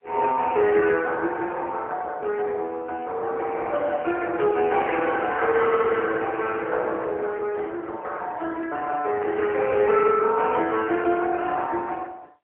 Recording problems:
phone line; 320 Hz to 3.4 kHz, AMR-NB, then MP3

